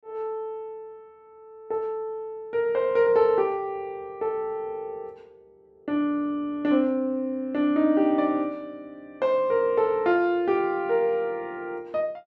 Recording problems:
none

